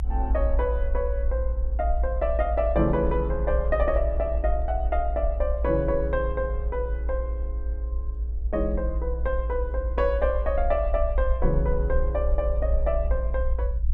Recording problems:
rumble; below 58 Hz, strongest tone 56 Hz, SNR 1 dB

